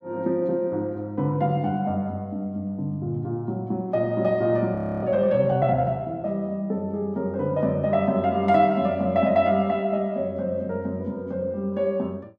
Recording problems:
audio freezing; at 5 s

